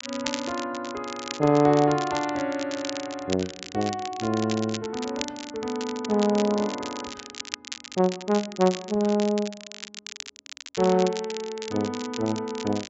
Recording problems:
treble missing; nothing above 7.6 kHz
crackling; vinyl, SNR 11 dB

